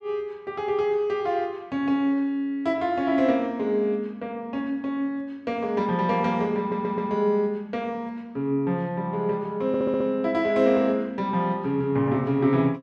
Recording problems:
stutter; at 6.5 s and at 9.5 s

